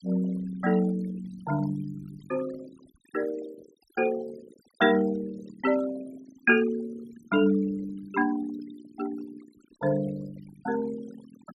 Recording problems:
noise reduction artefacts; signal-to-artefact ratio 16 dB

